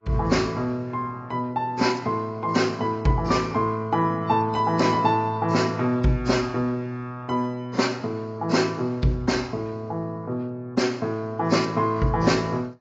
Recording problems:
codec artefacts; AAC, log-spectral distance 2 dB, nothing above 7.3 kHz

